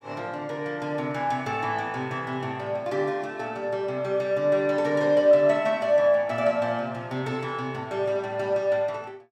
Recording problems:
none

